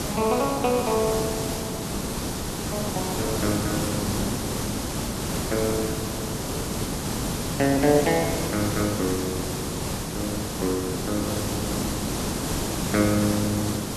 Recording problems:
background hiss; SNR 1 dB

